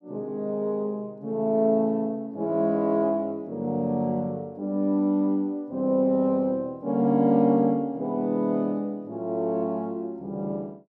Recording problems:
none

